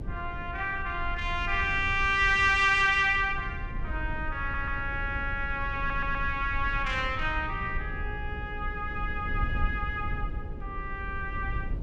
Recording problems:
electrical hum; 60 Hz, harmonics up to 540 Hz, SNR 22 dB
low-frequency rumble; below 80 Hz, SNR 9 dB
audio stuttering; at 4.5 s and at 6 s

